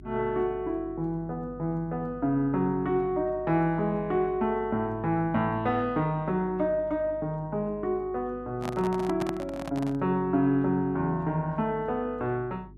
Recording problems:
hum; 50 Hz, harmonics up to 400 Hz, SNR 20 dB
handling noise; from 8.5 to 10 s; peak -2 dB vs average level

